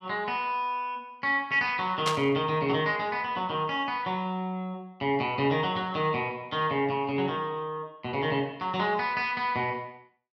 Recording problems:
burst of static; at 2 s; peak +3 dB vs average level

